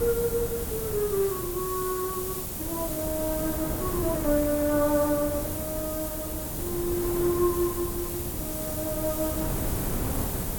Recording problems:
background hiss; SNR 4 dB
wind on the microphone; below 410 Hz, SNR 6 dB

